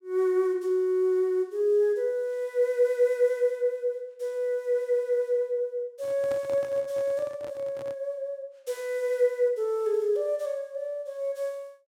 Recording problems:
handling noise; from 6 to 8 s; peak -9 dB vs average level

